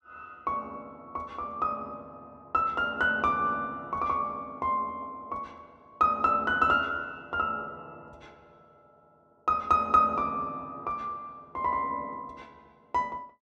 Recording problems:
none

